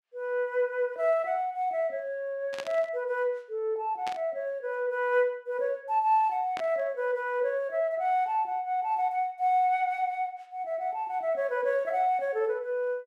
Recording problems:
burst of static; at 2.5 s, at 4 s and at 6.5 s; peak -5 dB vs average level

